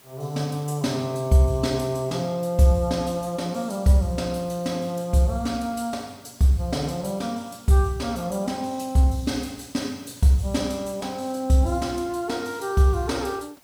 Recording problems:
hiss; slope -2 dB per octave, SNR 29 dB

